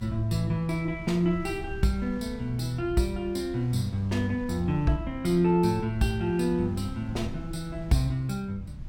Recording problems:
low-frequency rumble; below 120 Hz, SNR 14 dB
wind noise; below 1.9 kHz, SNR 27 dB

